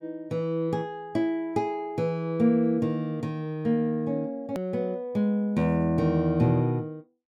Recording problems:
hard cut with a click; at 4.5 s

